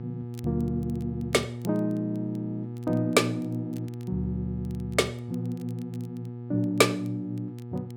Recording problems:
hum; 60 Hz, harmonics up to 840 Hz, SNR 8 dB
crackling; vinyl, SNR 29 dB

